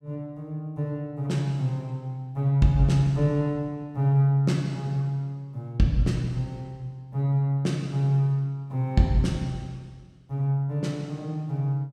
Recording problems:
none

